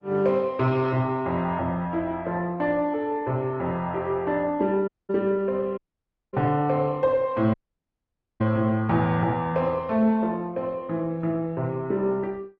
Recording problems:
codec artefacts; Opus, log-spectral distance 2 dB
audio cutting out; at 5 s, at 6 s for 0.5 s and at 7.5 s for 1 s

